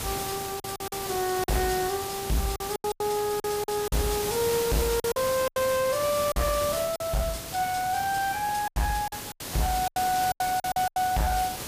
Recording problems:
distorted audio; hard clipping, signal-to-distortion ratio 7 dB
background hiss; slope -2 dB per octave, SNR 6 dB
lost packets; 11% of the sound replaced, filled with silence

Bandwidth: 15 kHz